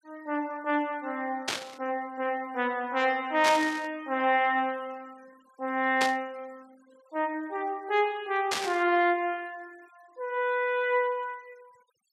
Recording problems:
noise reduction artefacts; signal-to-artefact ratio 28 dB
burst of static; 4 times, first at 1.5 s; peak +3 dB vs average level

